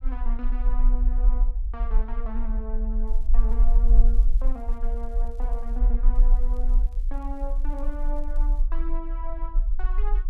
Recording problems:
rumble; below 40 Hz, strongest tone 24 Hz, SNR -13 dB
crackling; from 3 to 6 s and from 6 to 8.5 s; loose cable, SNR 25 dB

